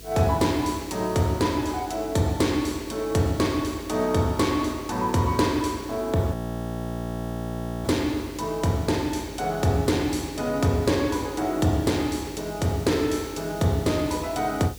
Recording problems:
electrical hum; 50 Hz, harmonics up to 500 Hz, SNR 21 dB
background hiss; slope +3 dB per octave, SNR 21 dB
audio freezing; at 6.5 s for 1.5 s

